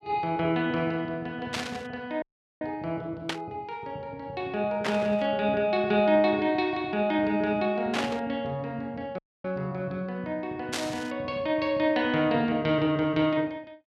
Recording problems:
static burst; 5 times, first at 1.5 s; peak +2 dB vs average level
dropout; at 2 s and at 9 s

